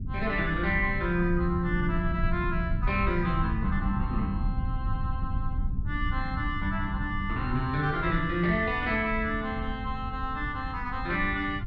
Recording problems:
rumble; below 110 Hz, SNR 4 dB

